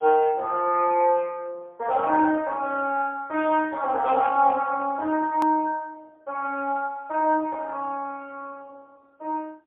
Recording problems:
telephone audio; 340 Hz to 3.4 kHz, AMR-NB, then MP3
hard cut with a click; at 5.5 s

